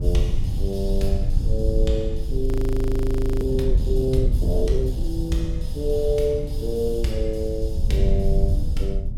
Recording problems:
rumble; below 72 Hz, SNR -1 dB
frozen audio; at 2.5 s for 1 s

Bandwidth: 16 kHz